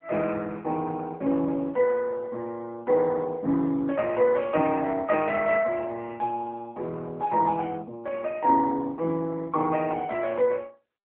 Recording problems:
telephone audio; 220 Hz to 2.5 kHz, AMR-NB

